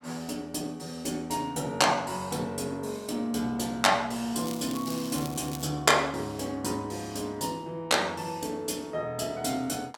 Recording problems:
crackling; from 4.5 to 5.5 s; loose cable, SNR 12 dB

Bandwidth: 17 kHz